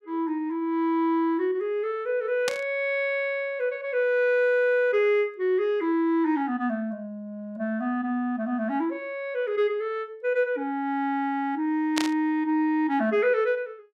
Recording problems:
burst of static; at 2.5 s and at 12 s; peak +2 dB vs average level

